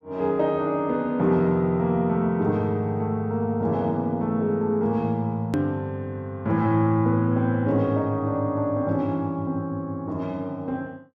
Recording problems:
click at an edit; at 5.5 s

